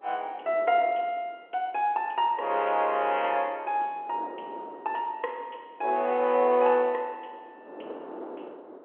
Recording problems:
phone line; 280 Hz to 3.3 kHz, G.711
wind on the microphone; below 700 Hz, SNR 19 dB

